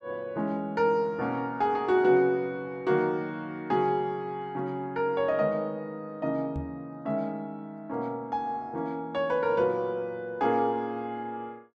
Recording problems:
microphone thump; at 6.5 s; peak -3 dB vs average level

